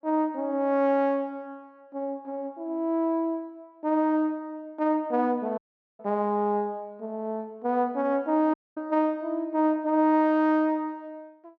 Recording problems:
audio cutting out; at 5.5 s and at 8.5 s

